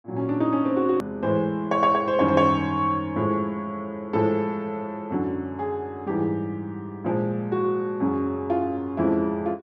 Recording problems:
edit click; at 1 s

